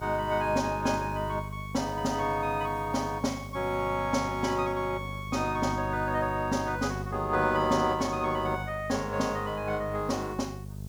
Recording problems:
hum; 50 Hz, harmonics up to 450 Hz, SNR 10 dB
background hiss; slope +3 dB per octave, SNR 27 dB

